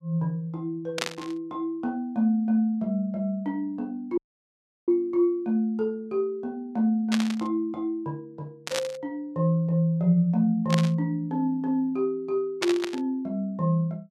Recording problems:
burst of static; 5 times, first at 1 s; peak +3 dB vs average level
audio cutting out; at 4 s for 0.5 s

